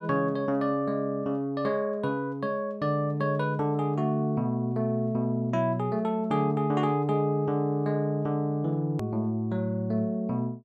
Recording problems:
edit click; at 9 s

